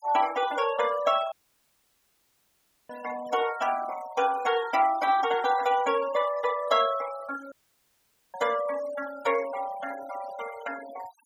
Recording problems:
noise reduction artefacts; signal-to-artefact ratio 16 dB
audio cutting out; at 1.5 s for 1.5 s and at 7.5 s for 1 s

